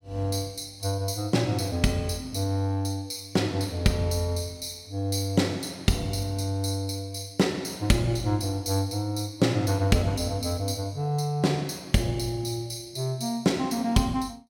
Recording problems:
none

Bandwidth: 16.5 kHz